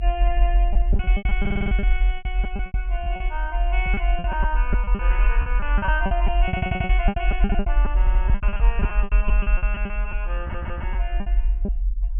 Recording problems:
low-pass filter; nothing above 3.3 kHz
low-frequency rumble; below 48 Hz, strongest tone 40 Hz, SNR -6 dB
lost packets; 17% of the sound replaced, filled with repeated pitch periods
stutter; 4 times, first at 1.5 s

